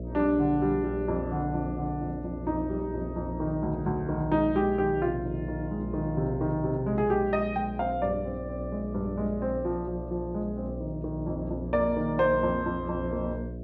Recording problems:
mains hum; 60 Hz, harmonics up to 660 Hz, SNR 8 dB

